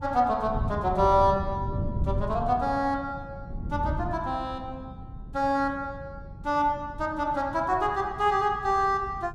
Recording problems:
wind noise; below 150 Hz, SNR 10 dB

